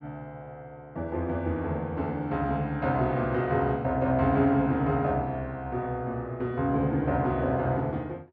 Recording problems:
none

